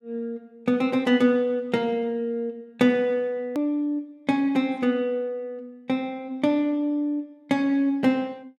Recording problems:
edit click; at 3.5 s

